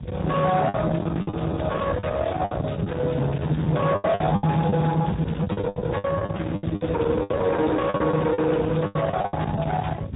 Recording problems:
low-pass filter; nothing above 3.8 kHz
codec artefacts; Speex, log-spectral distance 4 dB
distortion; soft clipping, signal-to-distortion ratio 7 dB
low-frequency rumble; below 600 Hz, SNR 8 dB
packet loss; 14% of the sound replaced, filled with the last packet

